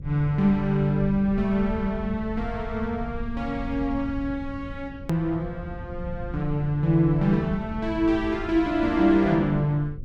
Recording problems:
electrical hum; 50 Hz, harmonics up to 550 Hz, SNR 23 dB
rumble; below 110 Hz, SNR 13 dB
hard cut with a click; at 5 s

